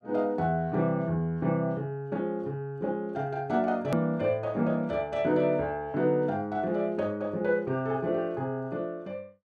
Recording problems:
click at an edit; at 4 s

